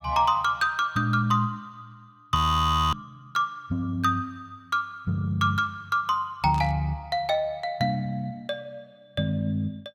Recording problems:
audio freezing; at 2.5 s for 0.5 s
burst of static; at 6.5 s; peak -13 dB vs average level

